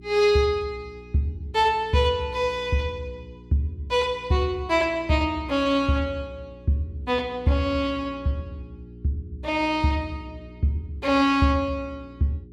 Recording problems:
electrical hum; 60 Hz, harmonics up to 420 Hz, SNR 20 dB

